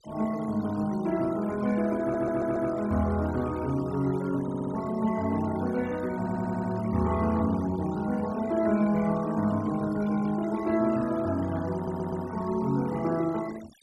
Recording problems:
noise reduction artefacts; signal-to-artefact ratio 18 dB
stutter; 4 times, first at 2 s

